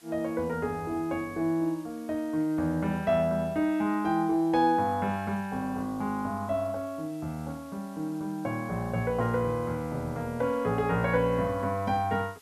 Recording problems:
background hiss; slope 0 dB per octave, SNR 26 dB

